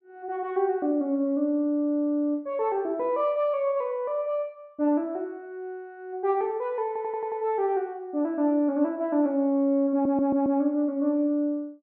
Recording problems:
audio stuttering; at 7 s and at 10 s

